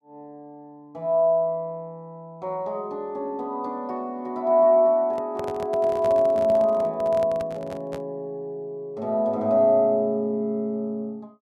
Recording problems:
handling noise; from 5 to 8 s; peak -8 dB vs average level

